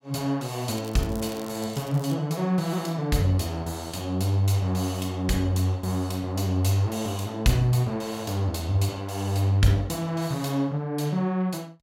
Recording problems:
crackling; from 0.5 to 2 s; loose cable, SNR 20 dB

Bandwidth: 16 kHz